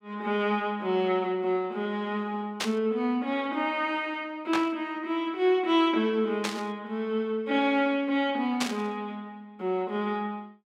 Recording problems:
burst of static; 4 times, first at 2.5 s; peak +3 dB vs average level

